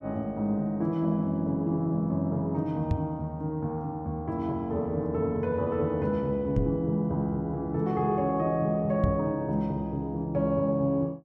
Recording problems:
knock on the microphone; at 3 s, at 6.5 s and at 9 s; peak +6 dB vs average level

